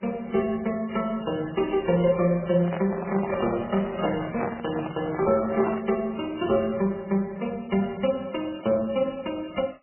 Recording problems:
lossy codec; MP3, then MP3, log-spectral distance 5 dB, nothing above 2.9 kHz
microphone handling noise; from 2.5 to 6 s; peak 0 dB vs average level

